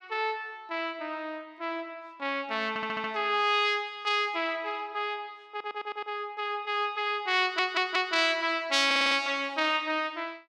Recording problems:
audio stuttering; 4 times, first at 2.5 s

